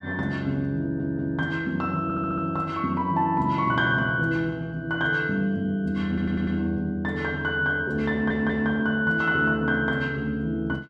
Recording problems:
audio stuttering; 4 times, first at 1 s

